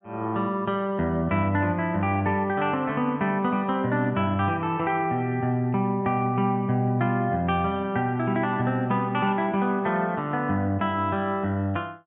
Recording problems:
treble missing; nothing above 3.8 kHz

